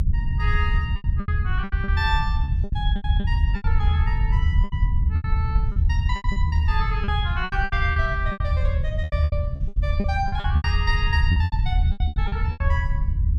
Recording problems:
low-frequency rumble; below 82 Hz, SNR -6 dB
packet loss; 16% of the sound replaced, filled with repeated pitch periods

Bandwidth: 14.5 kHz